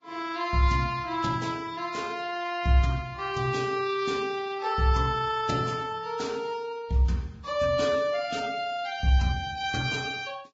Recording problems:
codec artefacts; Vorbis, log-spectral distance 3 dB, nothing above 7.3 kHz

